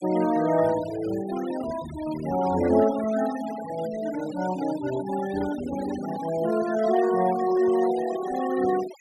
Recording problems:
noise reduction artefacts; signal-to-artefact ratio 14 dB

